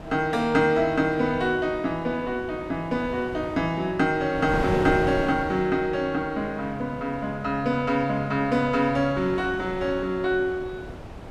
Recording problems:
wind noise; below 690 Hz, SNR 12 dB

